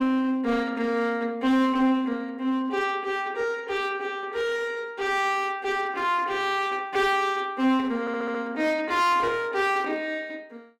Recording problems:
distorted audio; hard clipping, uneven, signal-to-distortion ratio 10 dB
audio stuttering; at 8 s

